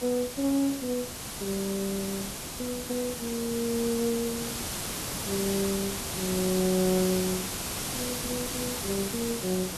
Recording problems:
background hiss; slope -2 dB per octave, SNR 2 dB

